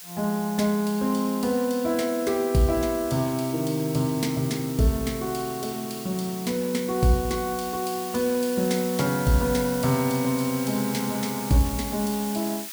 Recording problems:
hiss; slope +3 dB per octave, SNR 11 dB

